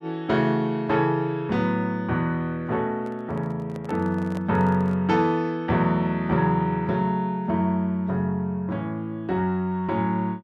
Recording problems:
microphone handling noise; from 3 to 5 s; peak -9 dB vs average level

